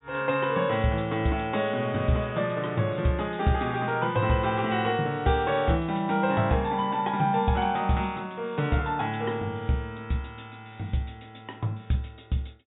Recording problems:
treble missing; nothing above 4 kHz

